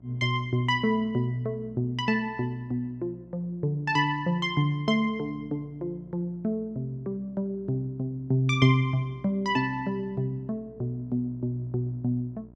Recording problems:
electrical hum; 60 Hz, harmonics up to 960 Hz, SNR 25 dB

